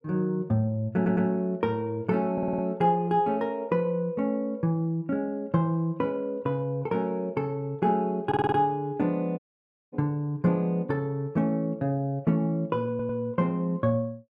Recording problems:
stutter; 4 times, first at 1 s
audio cutting out; at 9.5 s for 0.5 s

